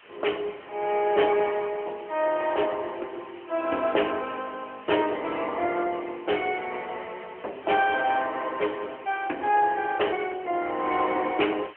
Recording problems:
telephone audio; 280 Hz to 3.3 kHz, AMR-NB
hiss; SNR 22 dB

